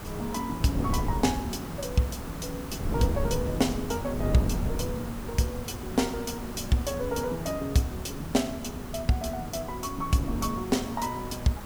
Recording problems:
hiss; SNR 11 dB
wind noise; below 220 Hz, SNR 6 dB

